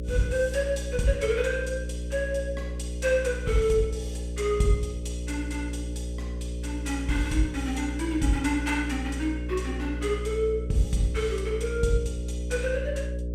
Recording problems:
hum; 60 Hz, harmonics up to 600 Hz, SNR 5 dB

